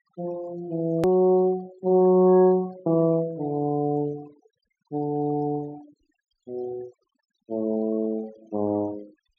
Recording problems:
treble missing; nothing above 7.6 kHz
noise reduction artefacts; signal-to-artefact ratio 25 dB
click at an edit; at 1 s

